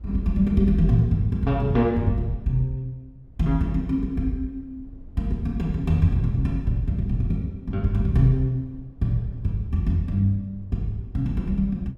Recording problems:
rumble; below 98 Hz, SNR 21 dB

